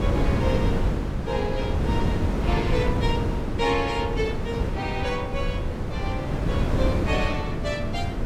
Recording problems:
wind on the microphone; below 280 Hz, SNR -3 dB

